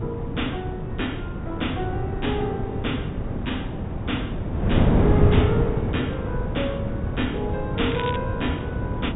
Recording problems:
treble cut off; nothing above 4 kHz
wind on the microphone; below 270 Hz, SNR -3 dB
crackling; at 8 s; loose cable, SNR 8 dB

